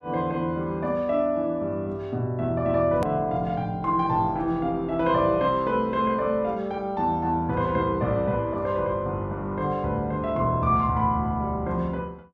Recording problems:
edit click; at 3 s

